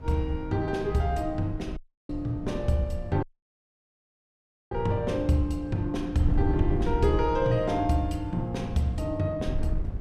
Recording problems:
rumble; below 100 Hz, SNR 16 dB
wind noise; below 98 Hz, SNR 8 dB
dropout; at 2 s and at 3 s for 1.5 s

